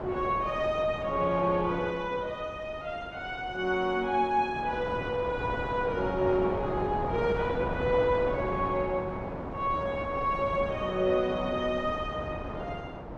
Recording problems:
wind noise; below 790 Hz, SNR 8 dB

